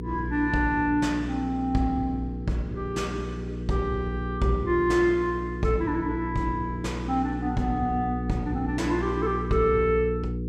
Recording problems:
hum; 60 Hz, harmonics up to 480 Hz, SNR 6 dB

